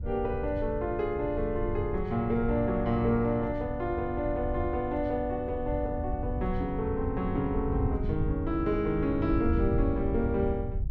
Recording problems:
wind on the microphone; below 100 Hz, SNR 5 dB

